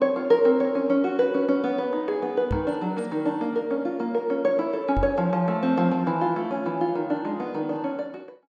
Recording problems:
microphone thump; at 2.5 s and at 5 s; peak +1 dB vs average level

